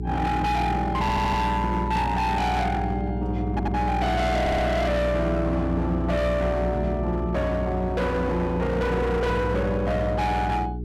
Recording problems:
distortion; hard clipping, signal-to-distortion ratio 7 dB
hum; 60 Hz, harmonics up to 420 Hz, SNR 5 dB
audio stuttering; at 1 s, at 3.5 s and at 4.5 s

